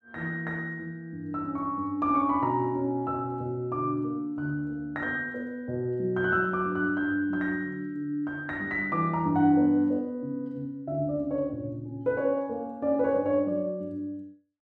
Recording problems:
none

